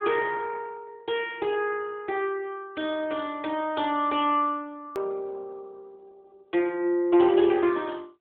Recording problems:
phone line; 300 Hz to 3.6 kHz, AMR-NB
click at an edit; at 5 s

